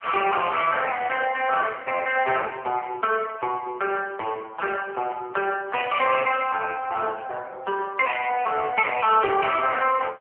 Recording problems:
phone line; 340 Hz to 2.9 kHz, AMR-NB

